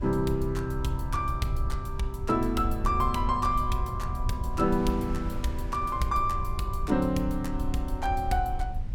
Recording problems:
rumble; below 78 Hz, SNR 6 dB
wind on the microphone; below 120 Hz, SNR 16 dB

